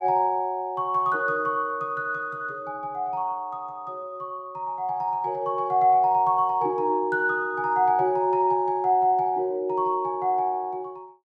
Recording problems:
none

